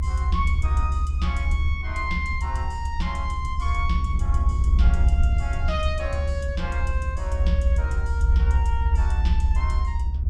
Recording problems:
rumble; below 72 Hz, SNR -7 dB
wind noise; below 140 Hz, SNR 8 dB

